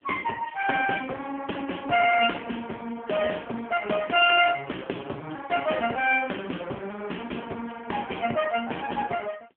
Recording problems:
phone line; 370 Hz to 3.2 kHz, AMR-NB

